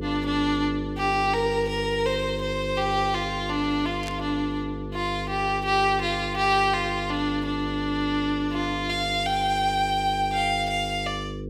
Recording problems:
hum; 50 Hz, harmonics up to 500 Hz, SNR 8 dB
burst of static; at 4 s; peak -7 dB vs average level

